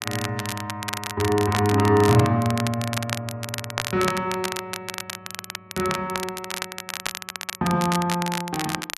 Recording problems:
crackle; vinyl, SNR 7 dB

